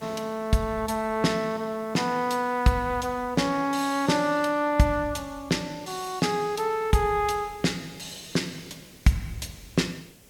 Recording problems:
hiss; SNR 25 dB

